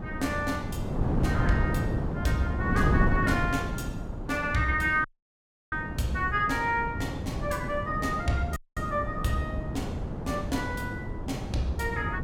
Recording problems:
wind on the microphone; below 260 Hz, SNR 2 dB
audio cutting out; at 5 s for 0.5 s and at 8.5 s

